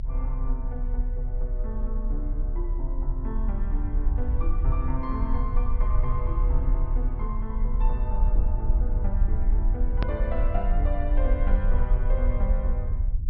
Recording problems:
treble missing; nothing above 5.5 kHz
low-frequency rumble; below 50 Hz, strongest tone 32 Hz, SNR -8 dB
edit click; at 10 s

